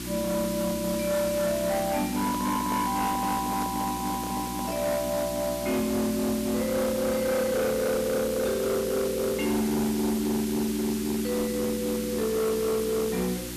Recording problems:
distorted audio; hard clipping, signal-to-distortion ratio 11 dB
hum; 60 Hz, harmonics up to 360 Hz, SNR 11 dB
hiss; slope 0 dB per octave, SNR 9 dB
microphone handling noise; from 2 to 5 s; peak -7 dB vs average level

